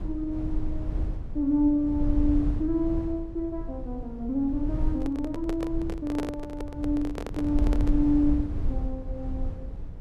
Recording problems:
rumble; below 74 Hz, SNR 5 dB
microphone handling noise; from 5 to 8 s; peak 0 dB vs average level

